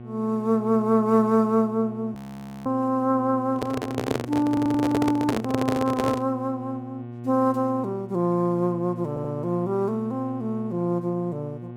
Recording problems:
mains hum; 60 Hz, harmonics up to 1.1 kHz, SNR 13 dB
audio freezing; at 2 s for 0.5 s
handling noise; from 3.5 to 6.5 s; peak +3 dB vs average level
stutter; at 4.5 s and at 9 s

